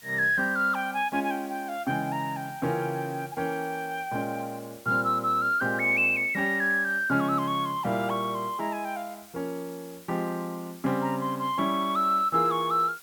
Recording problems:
background hiss; slope +1 dB per octave, SNR 21 dB

